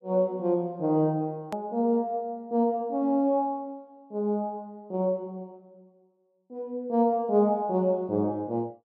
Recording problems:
hard cut with a click; at 1.5 s

